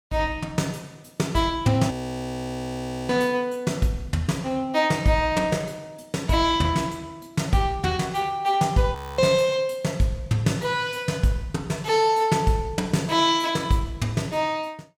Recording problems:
audio freezing; at 2 s for 1 s and at 9 s

